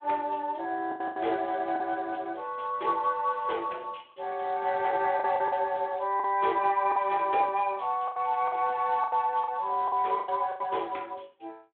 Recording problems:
telephone audio; 280 Hz to 3.6 kHz, Speex
packet loss; 7% of the sound replaced, filled with the last packet

